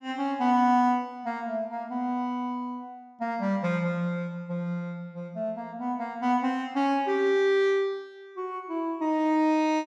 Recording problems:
none

